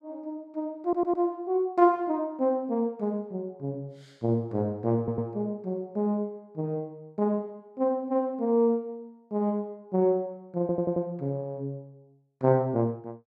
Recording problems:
audio stuttering; at 1 s, at 5 s and at 11 s

